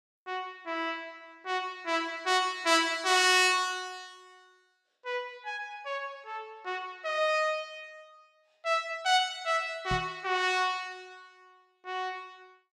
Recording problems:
knock on the microphone; at 10 s; peak -3 dB vs average level

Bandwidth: 15.5 kHz